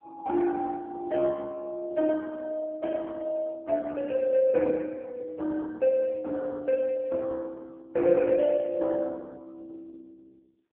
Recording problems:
telephone audio; 300 Hz to 3.1 kHz, AMR-NB

